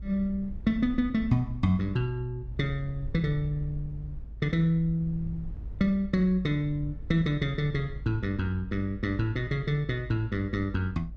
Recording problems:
rumble; below 66 Hz, strongest tone 54 Hz, SNR 13 dB

